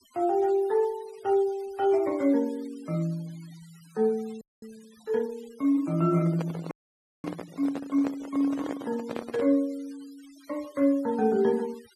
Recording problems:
noise reduction artefacts; signal-to-artefact ratio 24 dB
frozen audio; at 4.5 s and at 6.5 s for 0.5 s
microphone handling noise; from 6 to 9.5 s; peak -4 dB vs average level

